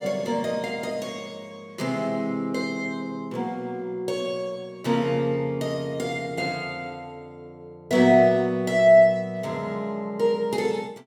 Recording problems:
none

